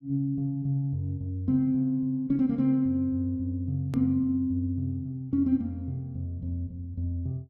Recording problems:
hard cut with a click; at 4 s

